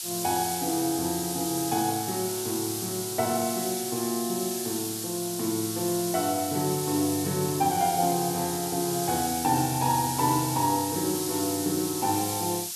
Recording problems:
hiss; SNR 3 dB

